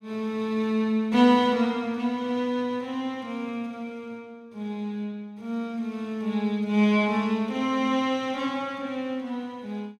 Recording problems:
none

